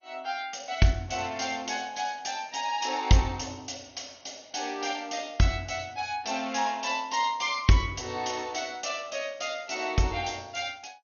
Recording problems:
codec artefacts; MP2, log-spectral distance 7 dB, nothing above 6.7 kHz

